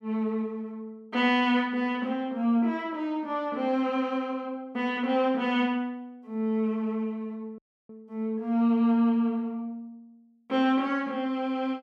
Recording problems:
audio cutting out; at 7.5 s

